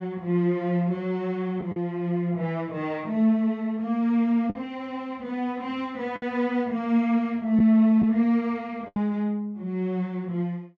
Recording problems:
packet loss; 2% of the sound replaced, filled with the last packet

